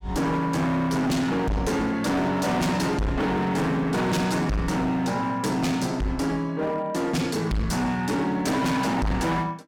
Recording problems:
distortion; hard clipping, signal-to-distortion ratio 6 dB

